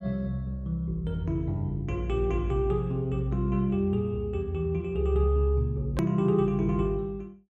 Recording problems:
hard cut with a click; at 6 s

